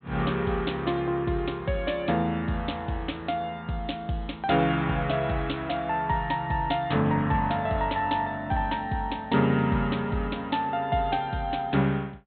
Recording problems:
treble missing; nothing above 4 kHz

